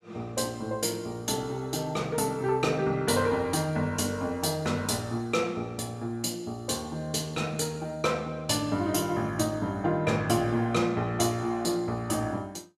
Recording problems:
none

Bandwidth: 14.5 kHz